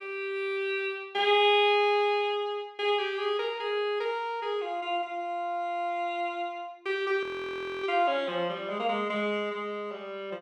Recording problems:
frozen audio; at 7 s for 0.5 s

